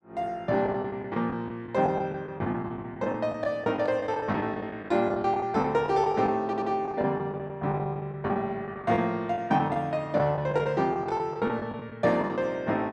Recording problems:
packet loss; 14% of the sound replaced, filled with the last packet
audio stuttering; at 6.5 s

